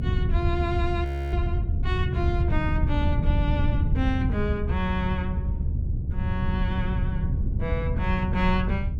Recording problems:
low-frequency rumble; below 120 Hz, SNR -4 dB
frozen audio; at 1 s

